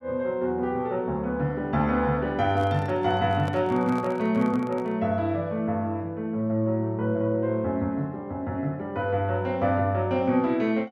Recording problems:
microphone handling noise; from 2.5 to 5 s; peak -8 dB vs average level

